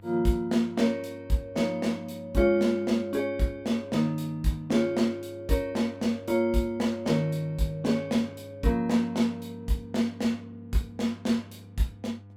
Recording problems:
hum; 50 Hz, harmonics up to 700 Hz, SNR 21 dB

